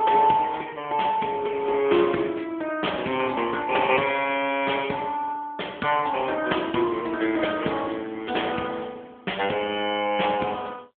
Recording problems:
telephone audio; 280 Hz to 3.4 kHz, AMR-NB

